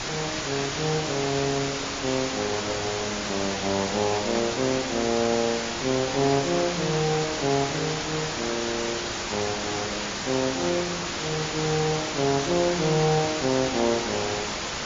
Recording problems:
codec artefacts; MP3, log-spectral distance 14 dB
distorted audio; soft clipping, signal-to-distortion ratio 3 dB
hiss; SNR 4 dB

